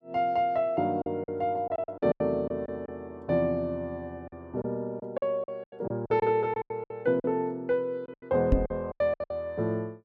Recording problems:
packet loss; 12% of the sound replaced, filled with silence
microphone bump; at 8.5 s; peak +9 dB vs average level

